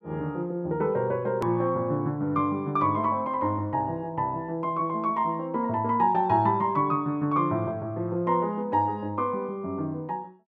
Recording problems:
edit click; at 1.5 s

